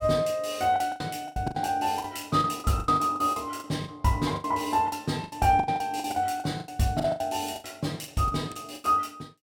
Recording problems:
lost packets; 17% of the sound replaced, filled with the last packet

